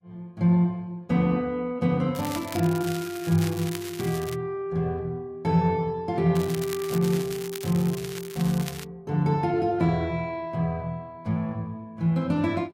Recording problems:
lossy compression; Vorbis, log-spectral distance 2 dB, nothing above 14.7 kHz
crackle; from 2 to 4.5 s and from 6.5 to 9 s; loose cable, SNR 12 dB

